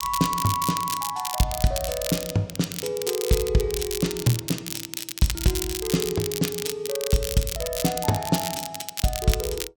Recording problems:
crackling; vinyl, SNR 5 dB

